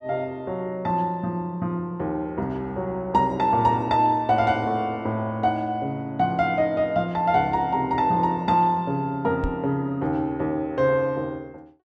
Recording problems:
microphone bump; at 9.5 s; peak -1 dB vs average level

